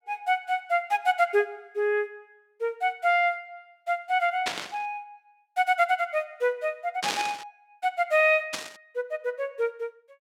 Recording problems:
static burst; at 4.5 s, at 7 s and at 8.5 s; peak +2 dB vs average level

